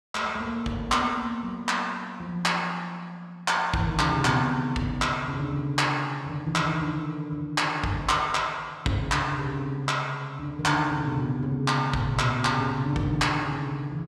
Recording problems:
none

